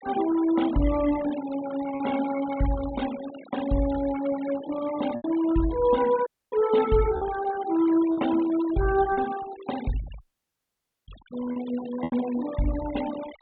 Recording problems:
low-pass filter; nothing above 4 kHz
noise reduction artefacts; signal-to-artefact ratio 15 dB
lost packets; 3% of the sound replaced, filled with repeated pitch periods
audio cutting out; at 6.5 s and at 10 s for 1 s

